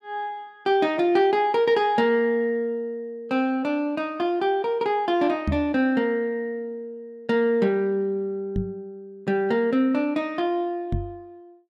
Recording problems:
microphone bump; at 5.5 s, at 8.5 s and at 11 s; peak +2 dB vs average level

